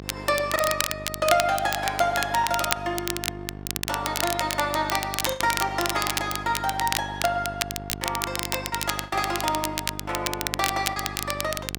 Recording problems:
hum; 50 Hz, harmonics up to 1.6 kHz, SNR 12 dB
crackling; vinyl, SNR 3 dB
lost packets; 4% of the sound replaced, filled with the last packet

